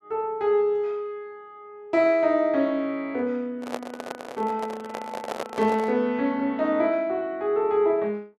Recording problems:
microphone handling noise; from 3.5 to 6 s; peak -2 dB vs average level

